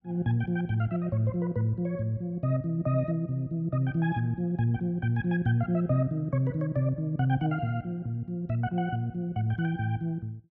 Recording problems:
none

